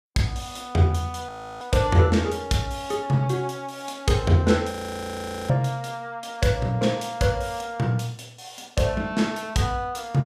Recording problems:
frozen audio; at 1.5 s and at 4.5 s for 1 s

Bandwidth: 14.5 kHz